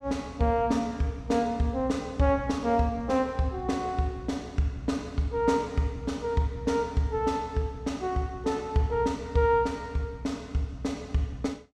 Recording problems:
none

